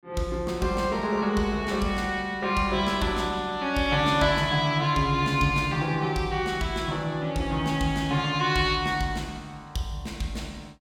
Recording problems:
none

